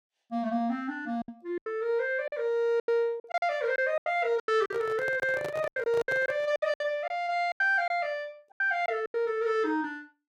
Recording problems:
lost packets; 13% of the sound replaced, filled with silence
handling noise; from 4.5 to 6.5 s; peak -5 dB vs average level

